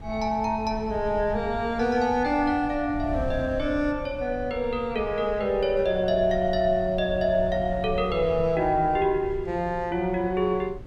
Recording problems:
wind noise; below 120 Hz, SNR 14 dB

